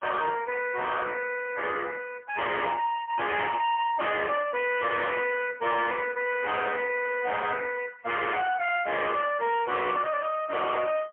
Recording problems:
phone line; 340 Hz to 3.4 kHz, AMR-NB, then MP3
distortion; hard clipping, signal-to-distortion ratio 7 dB

